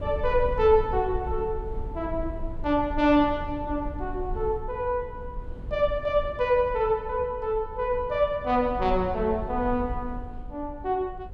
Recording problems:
wind on the microphone; below 70 Hz, SNR 12 dB

